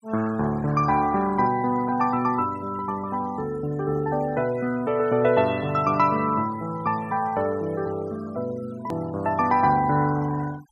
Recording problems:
denoising artefacts; signal-to-artefact ratio 21 dB
edit click; at 9 s

